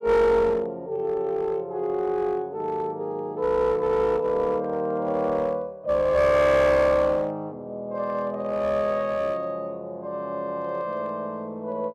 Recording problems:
distortion; hard clipping, uneven, signal-to-distortion ratio 9 dB

